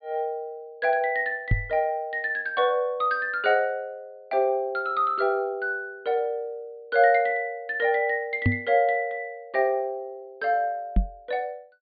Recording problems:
treble cut off; nothing above 4.7 kHz
microphone thump; at 1.5 s, at 8.5 s and at 11 s; peak +6 dB vs average level

